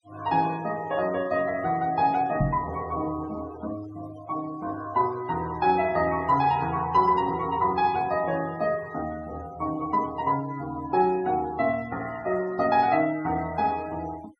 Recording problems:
denoising artefacts; signal-to-artefact ratio 21 dB
knock on the microphone; at 2.5 s; peak +4 dB vs average level

